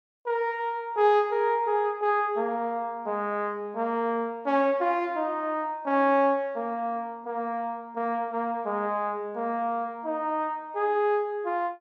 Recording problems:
none

